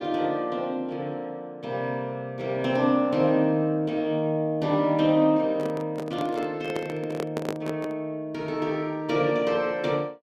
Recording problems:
handling noise; from 5.5 to 8 s; peak +1 dB vs average level

